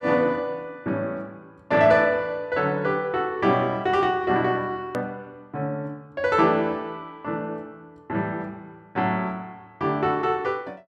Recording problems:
hard cut with a click; at 5 s

